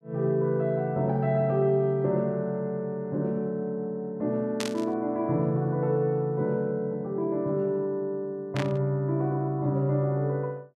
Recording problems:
burst of static; at 4.5 s and at 8.5 s; peak -1 dB vs average level

